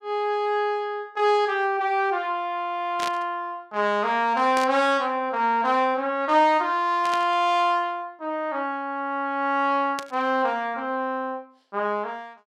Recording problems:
static burst; 4 times, first at 3 s; peak -3 dB vs average level

